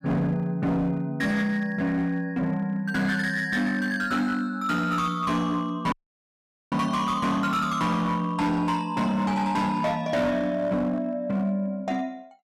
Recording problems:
distorted audio; hard clipping, signal-to-distortion ratio 10 dB
dropout; at 6 s for 1 s

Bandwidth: 15 kHz